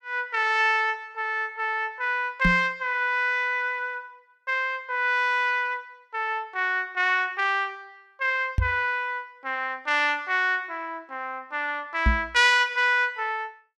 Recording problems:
microphone thump; at 2.5 s, at 8.5 s and at 12 s; peak +5 dB vs average level

